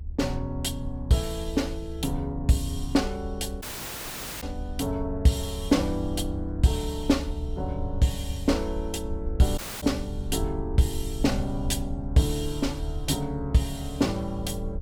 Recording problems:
rumble; below 72 Hz, SNR 8 dB
dropout; at 3.5 s for 1 s and at 9.5 s

